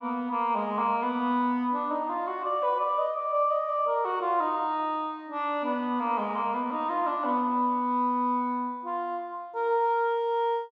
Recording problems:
none

